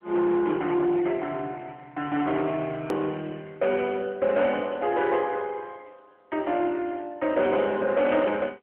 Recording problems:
phone line; 260 Hz to 3.4 kHz, AMR-NB
distortion; hard clipping, signal-to-distortion ratio 13 dB
click at an edit; at 3 s

